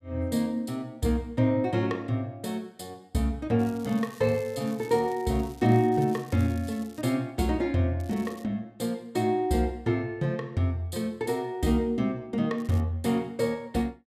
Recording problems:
crackle; from 3.5 to 7 s, at 8 s and at 13 s; loose cable, SNR 24 dB

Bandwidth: 14.5 kHz